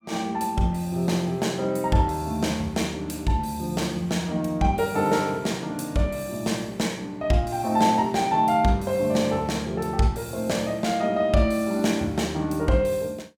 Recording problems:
none

